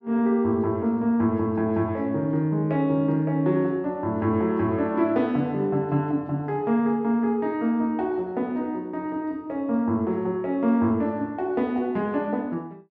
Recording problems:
none

